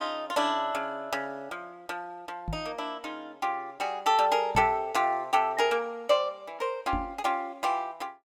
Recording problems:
knock on the microphone; at 2.5 s, at 4.5 s and at 7 s; peak -2 dB vs average level

